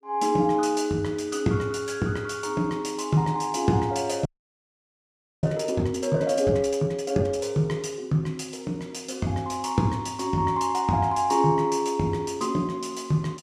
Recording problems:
frozen audio; at 4.5 s for 1 s

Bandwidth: 14.5 kHz